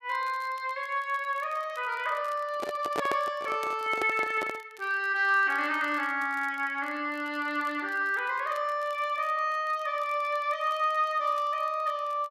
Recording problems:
crackle; vinyl, SNR 27 dB
handling noise; from 2.5 to 4.5 s; peak +2 dB vs average level

